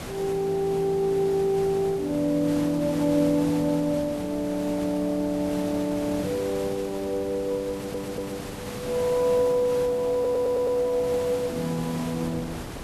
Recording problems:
background hiss; slope -5 dB per octave, SNR 12 dB
wind on the microphone; below 600 Hz, SNR 21 dB
stutter; at 7.5 s and at 10 s

